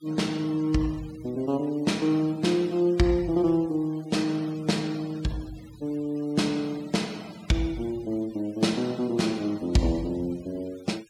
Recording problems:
noise reduction artefacts; signal-to-artefact ratio 22 dB

